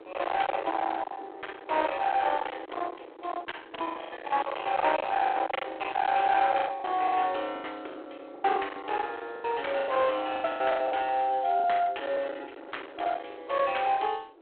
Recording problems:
telephone audio; 280 Hz to 3.6 kHz, G.726
distorted audio; hard clipping, signal-to-distortion ratio 8 dB
wind on the microphone; below 1.1 kHz, SNR 9 dB
packet loss; 12% of the sound replaced, filled with the last packet

